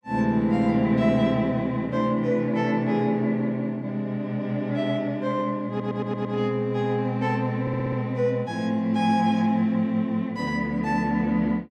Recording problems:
stutter; at 5.5 s and at 7.5 s

